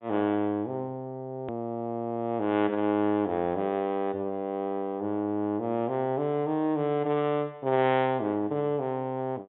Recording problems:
treble cut off; nothing above 3.7 kHz
edit click; at 1.5 s

